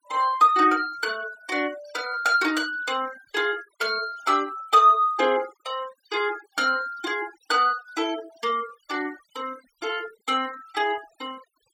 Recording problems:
noise reduction artefacts; signal-to-artefact ratio 20 dB

